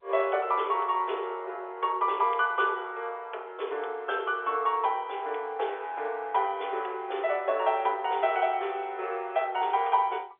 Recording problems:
phone line; 340 Hz to 3.6 kHz, G.711

